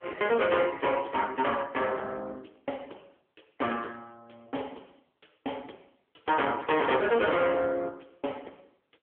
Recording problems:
telephone audio; 320 Hz to 3.4 kHz, AMR-NB
distorted audio; hard clipping, signal-to-distortion ratio 10 dB

